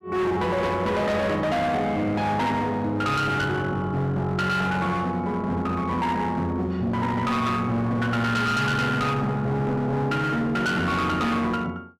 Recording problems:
distorted audio; hard clipping, uneven, signal-to-distortion ratio 7 dB

